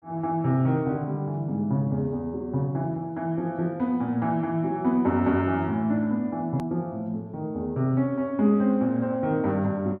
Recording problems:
edit click; at 6.5 s

